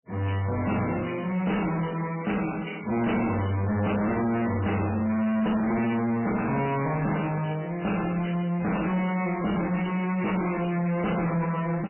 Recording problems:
codec artefacts; MP3, log-spectral distance 7 dB, nothing above 2.9 kHz
distortion; soft clipping, signal-to-distortion ratio 7 dB

